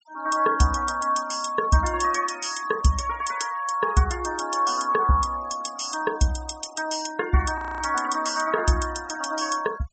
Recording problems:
treble missing; nothing above 8 kHz
denoising artefacts; signal-to-artefact ratio 19 dB
frozen audio; at 7.5 s

